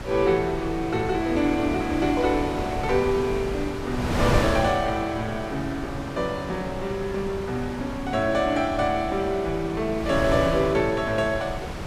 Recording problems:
wind on the microphone; below 850 Hz, SNR 7 dB

